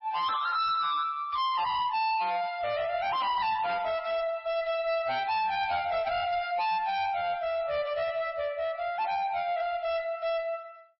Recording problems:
codec artefacts; MP3, log-spectral distance 2 dB, nothing above 5.3 kHz
distorted audio; soft clipping, signal-to-distortion ratio 7 dB

